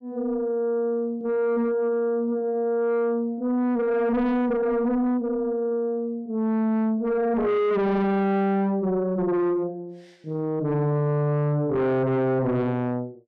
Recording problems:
distorted audio; soft clipping, signal-to-distortion ratio 5 dB

